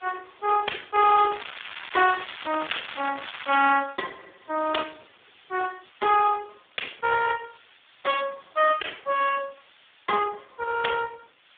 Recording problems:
telephone audio; 240 Hz to 2 kHz, Speex
hiss; SNR 29 dB
crackle; from 1.5 to 3.5 s; loose cable, SNR 11 dB

